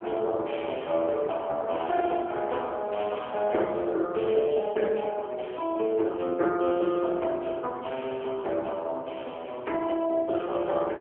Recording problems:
telephone audio; 280 Hz to 3.3 kHz, AMR-NB

